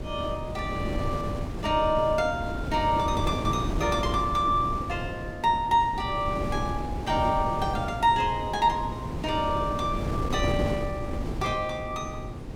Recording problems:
electrical hum; 60 Hz, harmonics up to 720 Hz, SNR 19 dB
wind noise; below 350 Hz, SNR 5 dB

